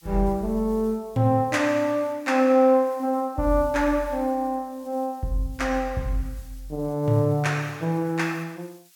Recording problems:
background hiss; slope +5 dB per octave, SNR 28 dB

